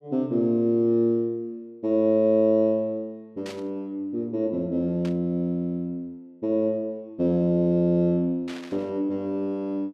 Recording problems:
static burst; at 3.5 s, at 5 s and at 8.5 s; peak -12 dB vs average level

